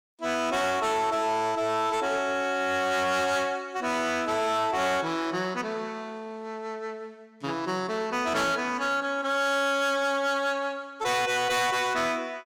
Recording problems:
distortion; hard clipping, signal-to-distortion ratio 10 dB

